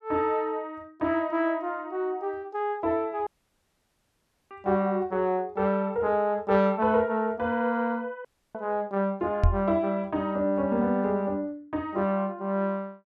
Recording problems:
audio cutting out; at 3.5 s for 1 s and at 8.5 s
microphone thump; at 9.5 s; peak +8 dB vs average level

